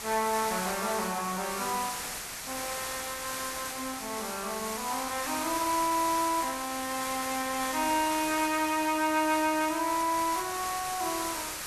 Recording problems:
hiss; slope -1 dB per octave, SNR 5 dB

